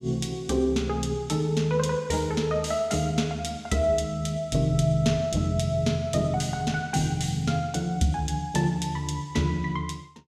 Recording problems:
none

